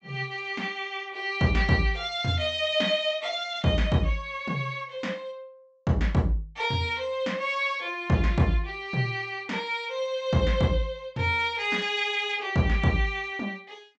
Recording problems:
treble missing; nothing above 8 kHz

